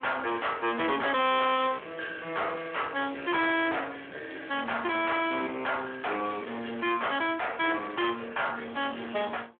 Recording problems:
phone line; 260 Hz to 3.5 kHz, Speex
distorted audio; soft clipping, signal-to-distortion ratio 7 dB

